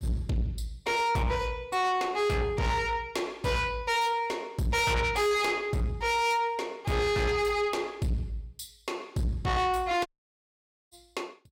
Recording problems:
distortion; soft clipping, signal-to-distortion ratio 8 dB
audio cutting out; at 10 s for 1 s

